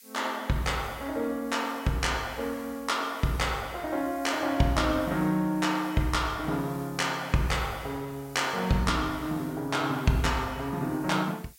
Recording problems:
hiss; SNR 22 dB

